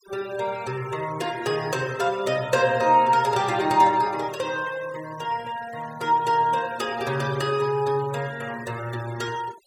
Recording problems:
noise reduction artefacts; signal-to-artefact ratio 19 dB

